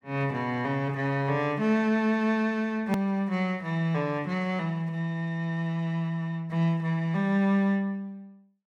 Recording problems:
hard cut with a click; at 3 s

